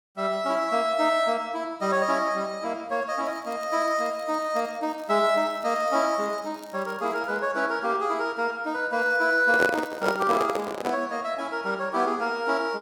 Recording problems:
crackling; from 3 to 7.5 s and from 9 to 11 s; loose cable, SNR 28 dB
handling noise; from 9.5 to 11 s; peak +4 dB vs average level

